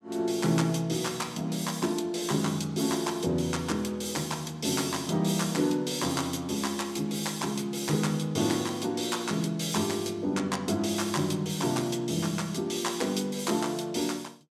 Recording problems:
none

